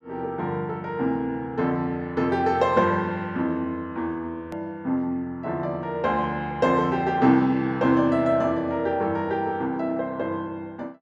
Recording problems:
hard cut with a click; at 4.5 s

